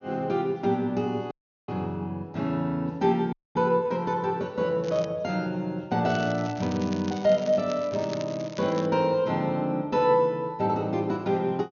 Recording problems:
treble cut off; nothing above 6.7 kHz
dropout; at 1.5 s and at 3.5 s
crackle; at 5 s and from 6 to 9 s; loose cable, SNR 18 dB

